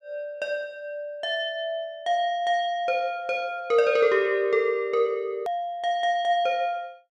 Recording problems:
edit click; at 5.5 s

